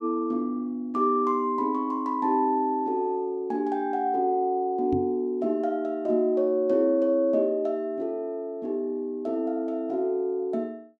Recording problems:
microphone bump; at 5 s; peak +2 dB vs average level

